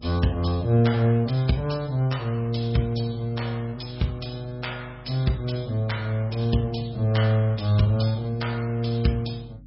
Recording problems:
codec artefacts; MP3, log-spectral distance 3 dB, nothing above 5.3 kHz
hum; 50 Hz, harmonics up to 300 Hz, SNR 23 dB

